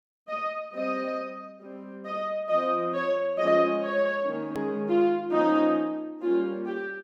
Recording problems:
click at an edit; at 4.5 s

